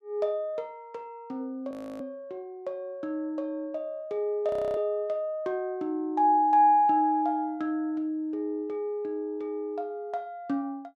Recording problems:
frozen audio; at 1.5 s and at 4.5 s

